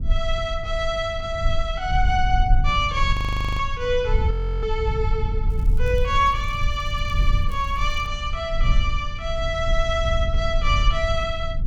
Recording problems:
rumble; below 66 Hz, SNR 1 dB
audio freezing; at 3 s and at 4.5 s
crackling; from 5.5 to 8 s; loose cable, SNR 29 dB

